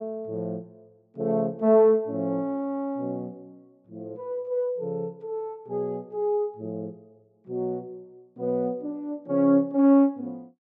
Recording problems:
none

